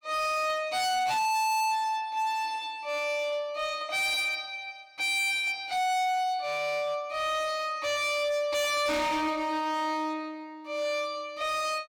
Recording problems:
distortion; hard clipping, signal-to-distortion ratio 6 dB

